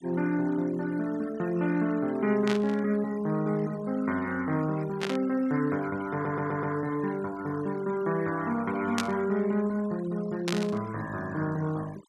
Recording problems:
denoising artefacts; signal-to-artefact ratio 19 dB
burst of static; 4 times, first at 2.5 s; peak +2 dB vs average level
stutter; at 6 s

